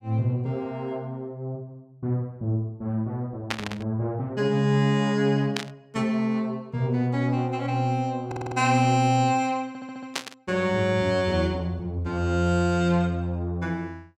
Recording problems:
static burst; at 3.5 s, at 5.5 s and at 10 s; peak +2 dB vs average level
stutter; at 8.5 s and at 9.5 s

